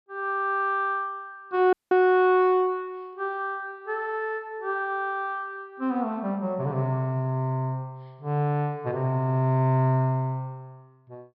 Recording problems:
treble cut off; nothing above 5.3 kHz
dropout; at 1.5 s

